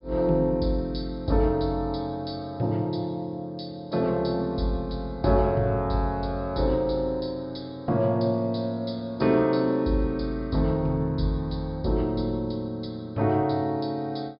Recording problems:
treble cut off; nothing above 5.5 kHz

